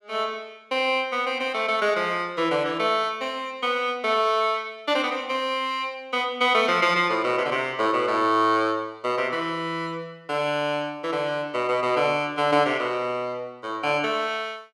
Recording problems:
none

